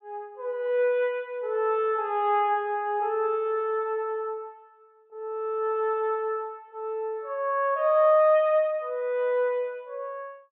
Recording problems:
low-pass filter; nothing above 4 kHz

